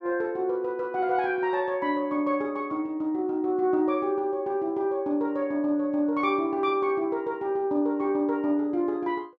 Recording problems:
none

